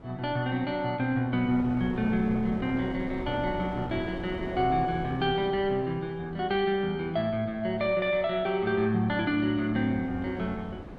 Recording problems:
wind noise; below 500 Hz, SNR 14 dB

